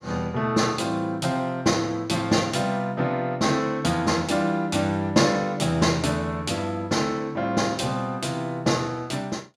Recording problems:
none

